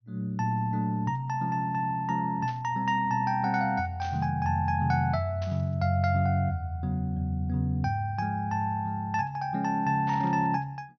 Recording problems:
burst of static; 4 times, first at 2.5 s; peak -13 dB vs average level

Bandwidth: 6.5 kHz